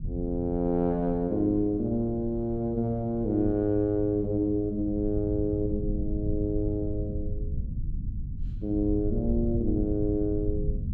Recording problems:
rumble; below 100 Hz, SNR 8 dB

